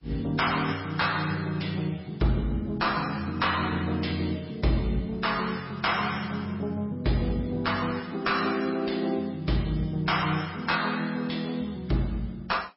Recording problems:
lossy codec; MP3, log-spectral distance 5 dB, nothing above 5.5 kHz
distortion; soft clipping, signal-to-distortion ratio 10 dB

